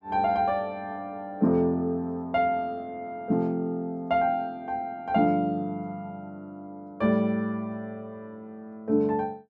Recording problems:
none

